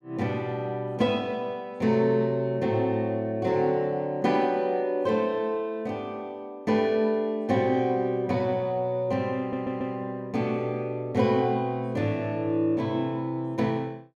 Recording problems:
stutter; at 9.5 s

